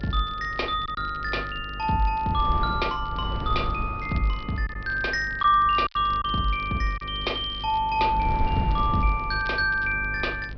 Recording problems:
treble missing; nothing above 5.5 kHz
mains hum; 50 Hz, harmonics up to 600 Hz, SNR 14 dB
wind on the microphone; below 150 Hz, SNR 12 dB
crackle; vinyl, SNR 27 dB
lost packets; 2% of the sound replaced, filled with silence

